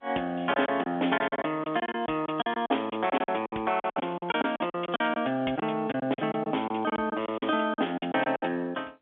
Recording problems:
telephone audio; 240 Hz to 3.5 kHz, G.711
lost packets; 15% of the sound replaced, filled with silence

